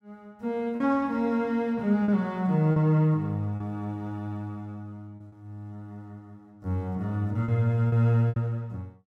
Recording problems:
lost packets; 5% of the sound replaced, filled with repeated pitch periods

